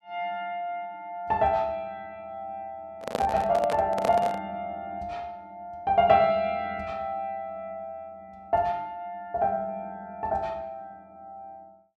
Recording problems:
microphone handling noise; from 3 to 4.5 s; peak +3 dB vs average level

